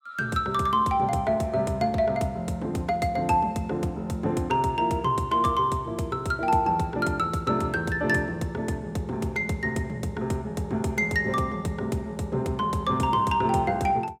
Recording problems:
none

